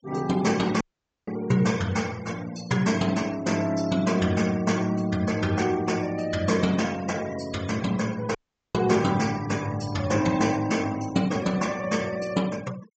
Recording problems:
low-pass filter; nothing above 8 kHz
denoising artefacts; signal-to-artefact ratio 19 dB
dropout; at 1 s and at 8.5 s

